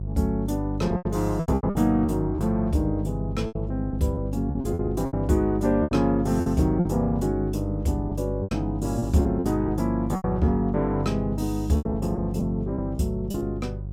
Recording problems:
hum; 50 Hz, harmonics up to 400 Hz, SNR 6 dB
lost packets; 10% of the sound replaced, filled with repeated pitch periods

